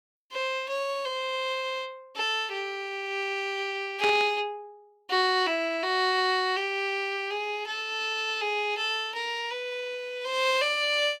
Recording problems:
static burst; at 4 s; peak 0 dB vs average level

